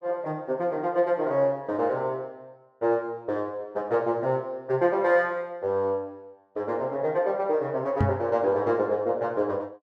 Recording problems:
microphone bump; at 8 s; peak +5 dB vs average level

